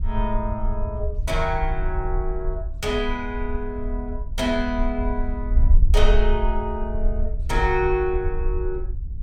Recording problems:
wind on the microphone; below 56 Hz, SNR 0 dB

